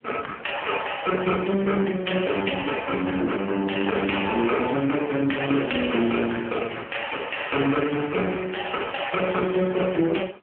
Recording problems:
telephone audio; 260 Hz to 3.2 kHz, AMR-NB

